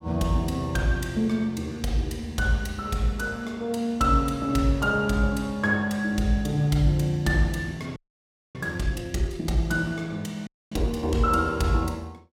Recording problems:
frozen audio; at 8 s for 0.5 s and at 10 s

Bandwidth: 16.5 kHz